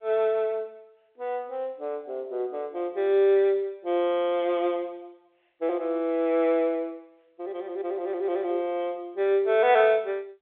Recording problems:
phone line; 280 Hz to 3.7 kHz, G.711

